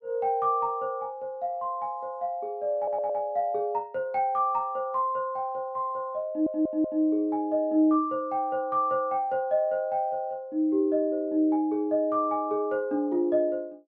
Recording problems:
audio stuttering; at 3 s and at 6.5 s

